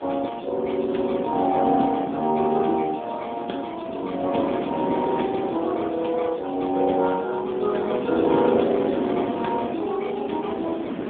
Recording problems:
telephone audio; 190 Hz to 3.4 kHz, AMR-NB
wind noise; below 530 Hz, SNR 8 dB

